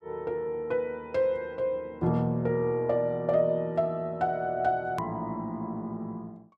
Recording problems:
click at an edit; at 5 s

